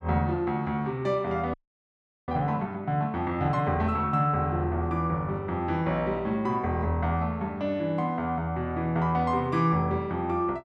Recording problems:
audio freezing; at 1.5 s for 0.5 s

